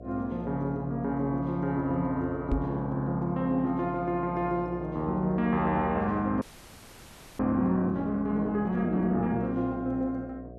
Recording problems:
electrical hum; 60 Hz, harmonics up to 720 Hz, SNR 14 dB
microphone thump; at 2.5 s; peak +4 dB vs average level
frozen audio; at 6.5 s for 1 s

